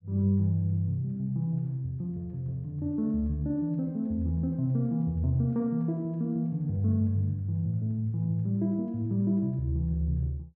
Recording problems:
none

